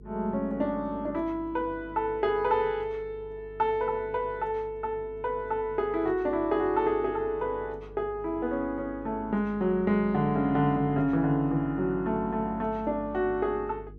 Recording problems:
hum; 50 Hz, harmonics up to 450 Hz, SNR 20 dB

